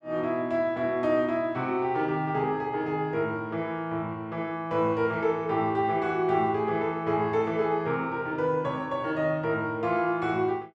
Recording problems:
none

